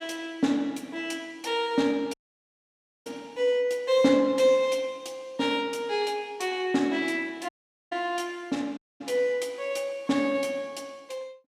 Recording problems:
audio cutting out; at 2 s for 1 s, at 7.5 s and at 9 s

